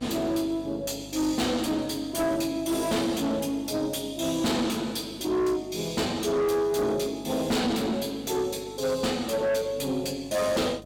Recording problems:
distortion; soft clipping, signal-to-distortion ratio 7 dB
mains hum; 50 Hz, harmonics up to 1.1 kHz, SNR 22 dB

